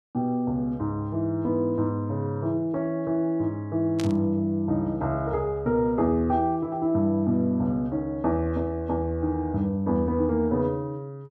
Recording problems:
burst of static; at 4 s; peak -6 dB vs average level

